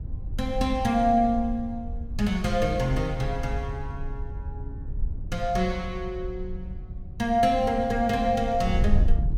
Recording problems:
wind noise; below 72 Hz, SNR 7 dB

